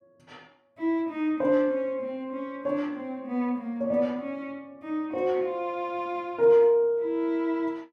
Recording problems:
none

